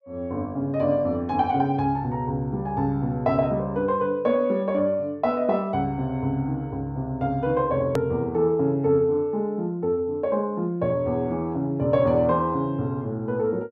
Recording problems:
click at an edit; at 8 s

